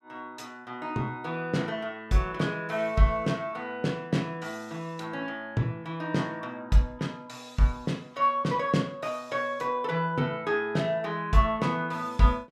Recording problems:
none

